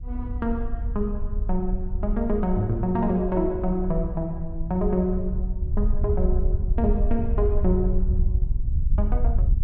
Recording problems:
wind on the microphone; below 66 Hz, SNR 0 dB

